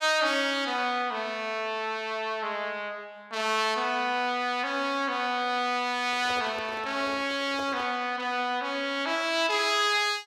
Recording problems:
microphone handling noise; from 6 to 8 s; peak -9 dB vs average level

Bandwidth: 15.5 kHz